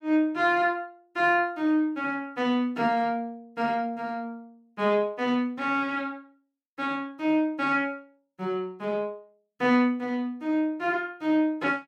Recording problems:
none

